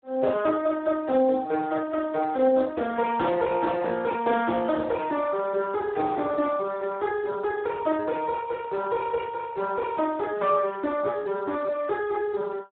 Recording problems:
phone line; 240 Hz to 3.8 kHz, Speex

